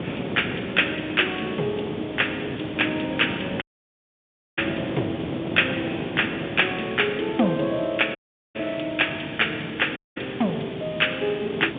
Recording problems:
telephone audio; 240 Hz to 3.6 kHz, G.711
hiss; SNR 17 dB
wind noise; below 500 Hz, SNR 9 dB
dropout; at 3.5 s for 1 s, at 8 s and at 10 s

